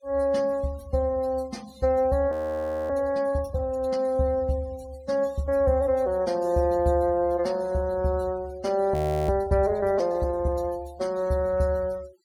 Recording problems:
denoising artefacts; signal-to-artefact ratio 25 dB
audio freezing; at 2.5 s for 0.5 s and at 9 s

